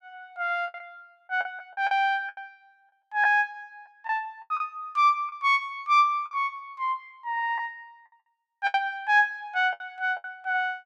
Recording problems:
lost packets; 9% of the sound replaced, filled with the last packet

